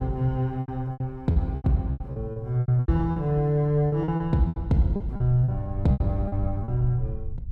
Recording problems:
low-frequency rumble; below 88 Hz, SNR 13 dB
lost packets; 15% of the sound replaced, filled with repeated pitch periods

